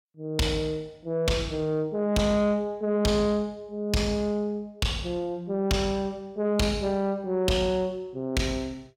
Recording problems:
distorted audio; soft clipping, signal-to-distortion ratio 11 dB

